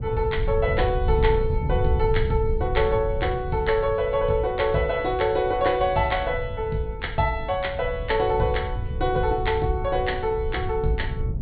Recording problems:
treble missing; nothing above 4.5 kHz
wind on the microphone; below 100 Hz, SNR 6 dB

